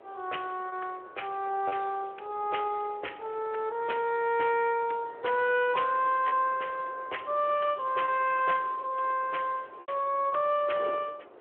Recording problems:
telephone audio; 340 Hz to 3.2 kHz, Speex
wind on the microphone; below 830 Hz, SNR 19 dB
lost packets; 3% of the sound replaced, filled with repeated pitch periods

